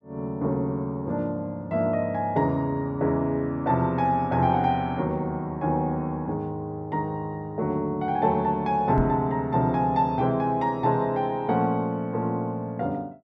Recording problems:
microphone bump; at 9 s; peak +1 dB vs average level

